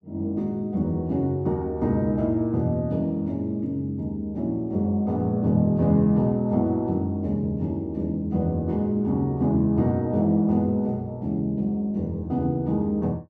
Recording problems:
none

